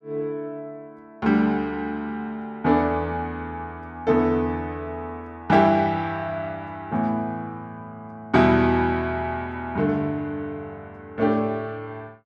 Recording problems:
none

